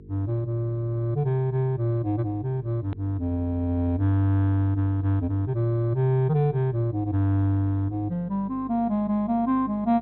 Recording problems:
treble cut off; nothing above 4.2 kHz
mains hum; 50 Hz, harmonics up to 450 Hz, SNR 21 dB
click at an edit; at 3 s

